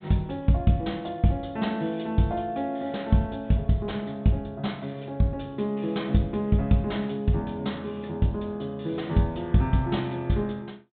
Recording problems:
low-pass filter; nothing above 4 kHz

